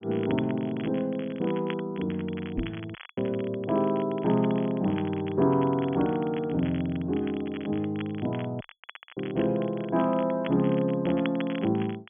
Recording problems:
low-pass filter; nothing above 3.4 kHz
crackle; vinyl, SNR 17 dB
microphone thump; at 2.5 s; peak 0 dB vs average level
audio cutting out; at 3 s and at 8.5 s for 0.5 s

